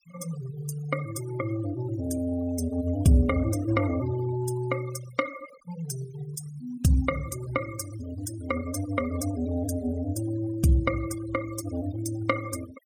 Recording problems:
noise reduction artefacts; signal-to-artefact ratio 15 dB

